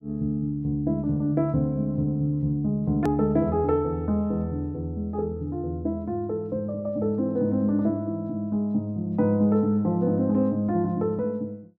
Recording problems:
edit click; at 3 s

